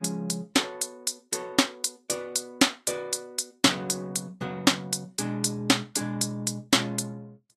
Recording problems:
lossy codec; Vorbis, log-spectral distance 3 dB, nothing above 12 kHz

